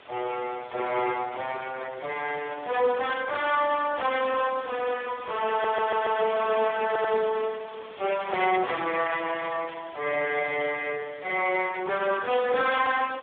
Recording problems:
phone line; 340 Hz to 3.4 kHz, Speex
distortion; hard clipping, uneven, signal-to-distortion ratio 13 dB
hiss; SNR 19 dB
static burst; 4 times, first at 1 s; peak -11 dB vs average level
audio stuttering; at 5.5 s and at 7 s

